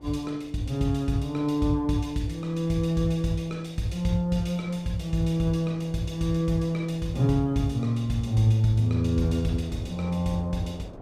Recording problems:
wind on the microphone; below 530 Hz, SNR 22 dB

